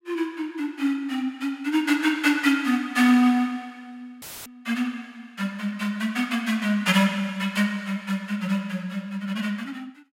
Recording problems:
dropout; at 4 s; filled with static

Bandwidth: 16 kHz